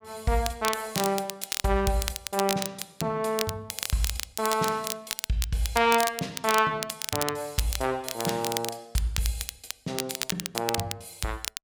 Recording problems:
crackling; vinyl, SNR 5 dB

